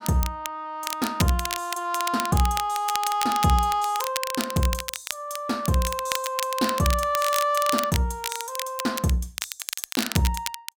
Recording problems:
crackle; vinyl, SNR 6 dB

